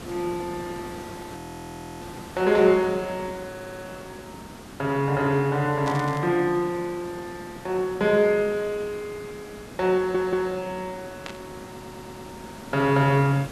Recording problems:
background hiss; slope -5 dB per octave, SNR 16 dB
audio freezing; at 1.5 s for 0.5 s
stutter; at 3.5 s, at 10 s and at 12 s
burst of static; at 6 s and at 11 s; peak -8 dB vs average level

